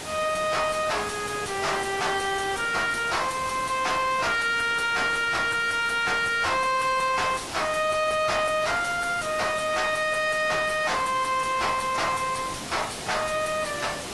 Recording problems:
lossy codec; AAC, log-spectral distance 6 dB, nothing above 11.3 kHz
distortion; soft clipping, signal-to-distortion ratio 5 dB
hiss; slope -3 dB per octave, SNR 9 dB

